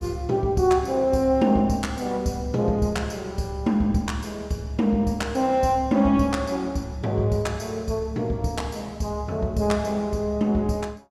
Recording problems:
none

